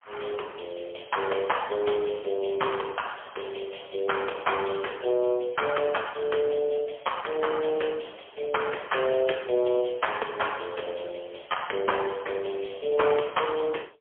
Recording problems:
telephone audio; 320 Hz to 3.3 kHz, AMR-NB, then MP3

